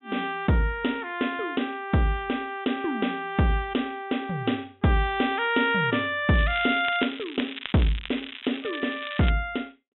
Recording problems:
treble missing; nothing above 3.7 kHz
crackle; from 6.5 to 9.5 s; loose cable, SNR 11 dB

